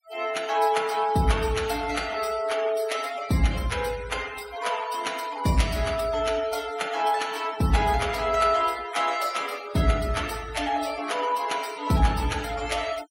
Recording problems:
denoising artefacts; signal-to-artefact ratio 15 dB

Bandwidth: 16.5 kHz